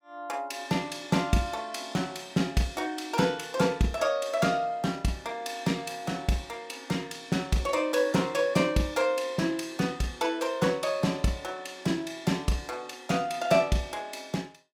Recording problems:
none

